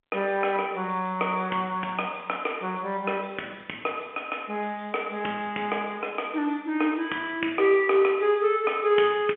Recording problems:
phone line; 260 Hz to 3.3 kHz, G.711

